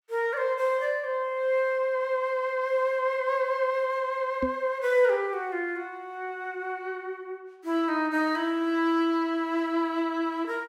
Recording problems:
microphone bump; at 4.5 s; peak 0 dB vs average level

